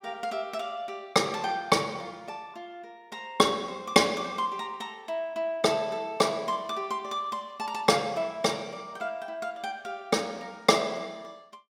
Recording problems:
none

